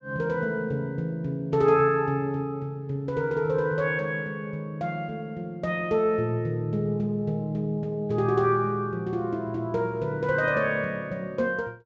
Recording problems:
low-pass filter; nothing above 8 kHz

